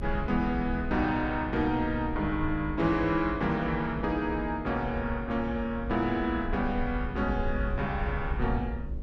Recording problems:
electrical hum; 50 Hz, harmonics up to 600 Hz, SNR 13 dB
rumble; below 68 Hz, SNR 9 dB

